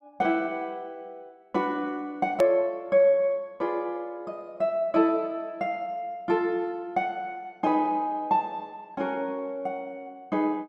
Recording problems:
hard cut with a click; at 2.5 s

